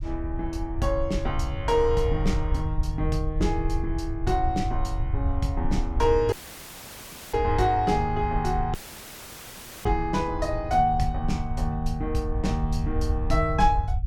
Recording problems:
low-frequency rumble; below 78 Hz, SNR 4 dB
audio cutting out; at 6.5 s for 1 s and at 8.5 s for 1 s; filled with static

